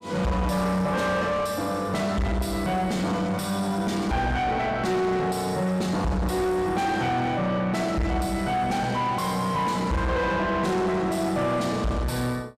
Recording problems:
distortion; soft clipping, signal-to-distortion ratio 8 dB

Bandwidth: 15.5 kHz